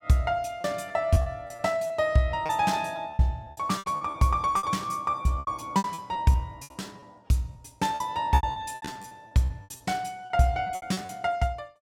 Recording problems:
lost packets; 15% of the sound replaced, filled with repeated pitch periods

